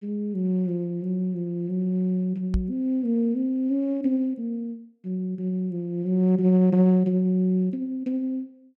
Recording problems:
knock on the microphone; at 2.5 s; peak +2 dB vs average level

